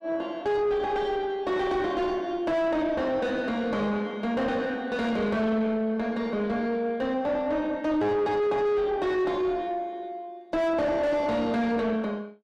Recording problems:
distorted audio; soft clipping, signal-to-distortion ratio 6 dB

